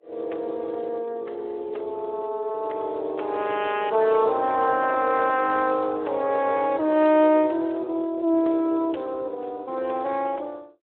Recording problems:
phone line; 280 Hz to 3.7 kHz, Speex

